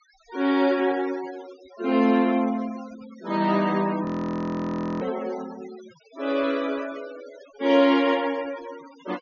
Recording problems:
treble cut off; nothing above 6.7 kHz
denoising artefacts; signal-to-artefact ratio 20 dB
audio freezing; at 4 s for 1 s

